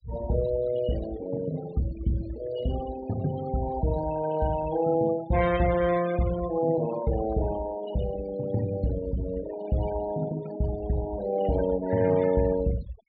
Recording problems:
low-pass filter; nothing above 4.6 kHz
noise reduction artefacts; signal-to-artefact ratio 13 dB

